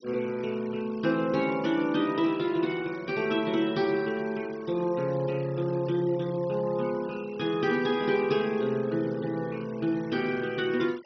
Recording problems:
treble missing; nothing above 6 kHz
noise reduction artefacts; signal-to-artefact ratio 21 dB

